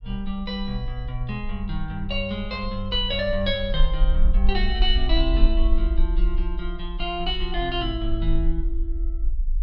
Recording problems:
low-frequency rumble; below 44 Hz, strongest tone 22 Hz, SNR 0 dB

